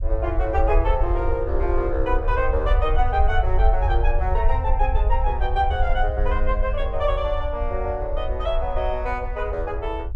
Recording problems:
rumble; below 58 Hz, SNR 0 dB

